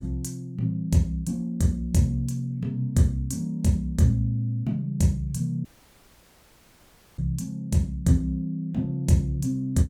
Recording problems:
audio cutting out; at 5.5 s for 1.5 s

